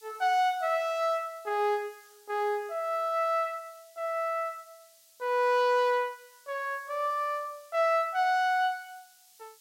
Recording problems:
background hiss; SNR 27 dB

